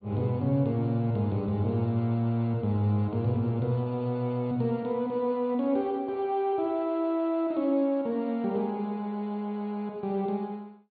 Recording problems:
treble cut off; nothing above 4.6 kHz

